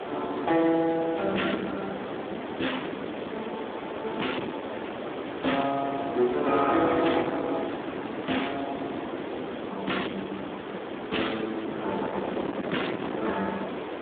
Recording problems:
phone line; 220 Hz to 3.6 kHz, Speex
distortion; hard clipping, signal-to-distortion ratio 11 dB
hiss; SNR 7 dB
wind on the microphone; below 780 Hz, SNR 9 dB

